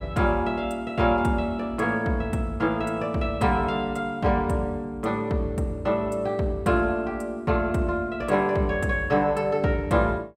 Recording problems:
none

